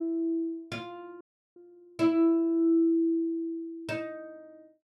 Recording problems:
dropout; at 1 s

